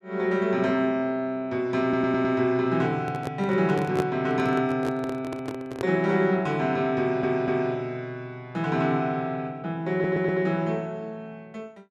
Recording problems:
stutter; at 2 s, at 7 s and at 10 s
handling noise; from 3 to 6 s; peak +1 dB vs average level

